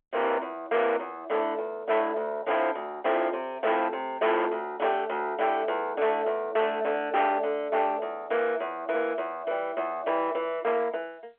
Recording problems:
telephone audio; 370 Hz to 3.3 kHz, G.711
distorted audio; soft clipping, signal-to-distortion ratio 8 dB

